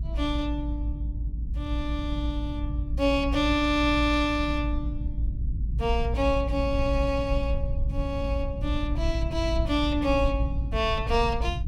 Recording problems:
rumble; below 74 Hz, strongest tone 54 Hz, SNR 3 dB

